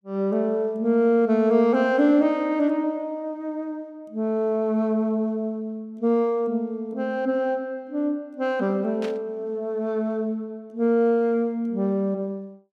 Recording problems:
static burst; at 9 s; peak -10 dB vs average level

